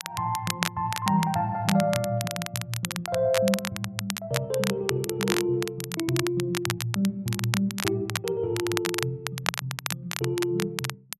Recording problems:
crackle; vinyl, SNR 4 dB

